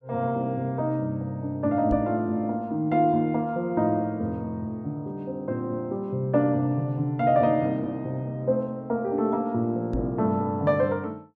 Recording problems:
microphone thump; at 2 s and at 10 s; peak -1 dB vs average level

